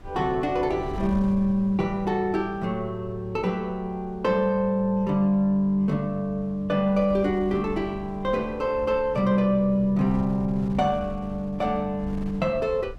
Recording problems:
wind noise; below 130 Hz, SNR 18 dB

